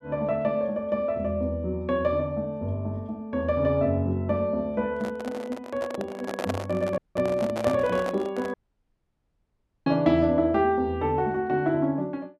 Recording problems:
microphone handling noise; from 5 to 8.5 s; peak +1 dB vs average level
dropout; at 7 s and at 8.5 s for 1.5 s

